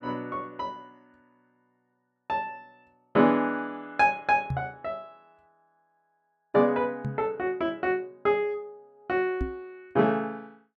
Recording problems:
microphone thump; at 4.5 s, at 7 s and at 9.5 s; peak 0 dB vs average level

